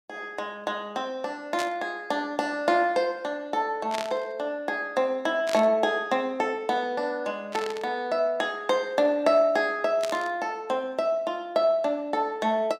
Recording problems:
burst of static; 5 times, first at 1.5 s; peak -3 dB vs average level

